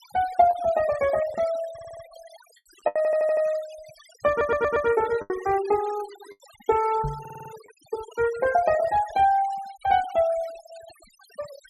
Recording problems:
noise reduction artefacts; signal-to-artefact ratio 19 dB
lost packets; 3% of the sound replaced, filled with the last packet
stutter; 4 times, first at 1.5 s
microphone bump; at 7 s; peak -4 dB vs average level

